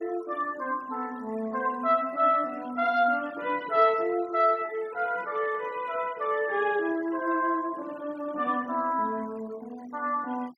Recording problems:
noise reduction artefacts; signal-to-artefact ratio 24 dB

